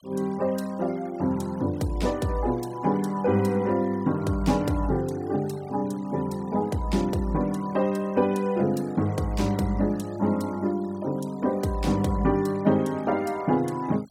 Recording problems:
denoising artefacts; signal-to-artefact ratio 23 dB

